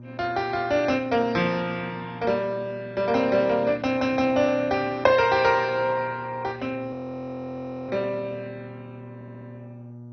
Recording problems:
codec artefacts; MP2, log-spectral distance 3 dB, nothing above 5.7 kHz
mains hum; 60 Hz, harmonics up to 840 Hz, SNR 18 dB
audio freezing; at 7 s for 1 s
stutter; at 9 s

